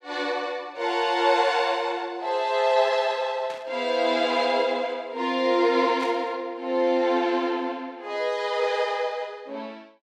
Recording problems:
static burst; at 3.5 s and at 6 s; peak -11 dB vs average level

